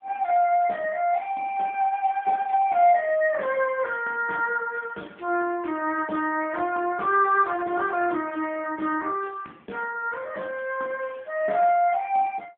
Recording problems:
telephone audio; 240 Hz to 2.6 kHz, AMR-NB

